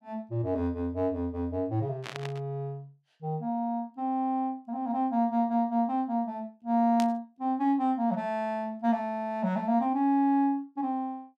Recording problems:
static burst; at 2 s and at 7 s; peak -5 dB vs average level

